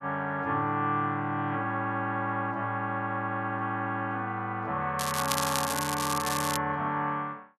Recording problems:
crackling; from 5 to 6.5 s; loose cable, SNR 3 dB

